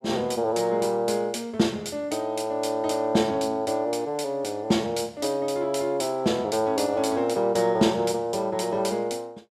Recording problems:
none

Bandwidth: 14.5 kHz